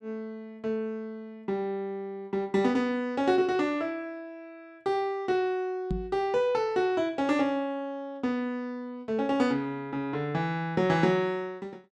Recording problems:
microphone bump; at 6 s; peak +1 dB vs average level

